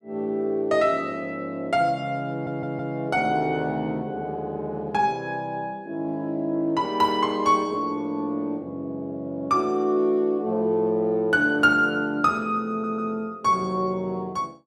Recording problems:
audio stuttering; at 2.5 s and at 13 s

